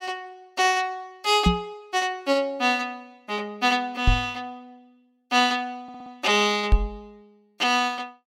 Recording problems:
microphone bump; at 1.5 s, at 4 s and at 6.5 s; peak +7 dB vs average level
stutter; at 6 s

